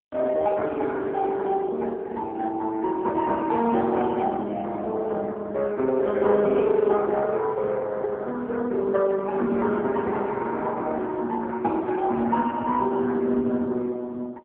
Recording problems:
phone line; 220 Hz to 3.8 kHz, AMR-NB

